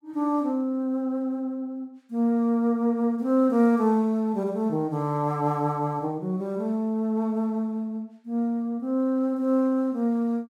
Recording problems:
none

